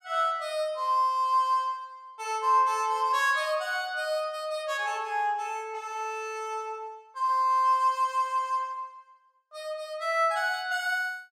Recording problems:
none

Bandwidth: 16.5 kHz